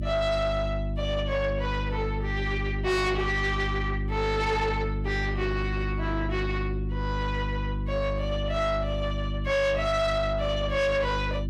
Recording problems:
distortion; soft clipping, signal-to-distortion ratio 12 dB
hum; 50 Hz, harmonics up to 550 Hz, SNR 3 dB

